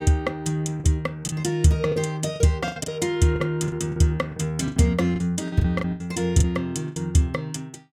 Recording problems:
lost packets; 11% of the sound replaced, filled with the last packet

